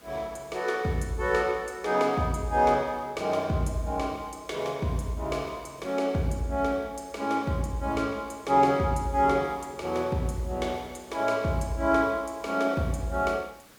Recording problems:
hiss; slope -3 dB per octave, SNR 27 dB

